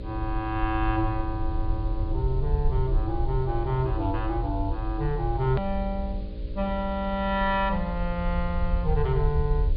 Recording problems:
treble missing; nothing above 4.7 kHz
hum; 60 Hz, harmonics up to 600 Hz, SNR 12 dB
hiss; SNR 27 dB
rumble; below 66 Hz, SNR 3 dB
hard cut with a click; at 5.5 s

